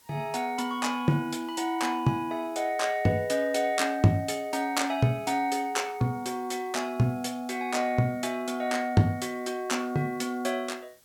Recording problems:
hiss; slope -1 dB per octave, SNR 28 dB

